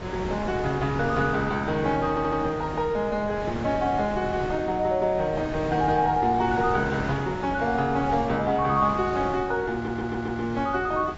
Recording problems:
codec artefacts; AAC, log-spectral distance 2 dB, nothing above 6.7 kHz
wind noise; below 940 Hz, SNR 10 dB
stutter; at 2 s and at 9.5 s

